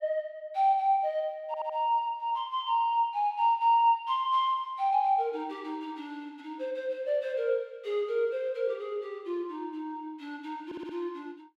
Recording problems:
audio stuttering; at 1.5 s and at 11 s

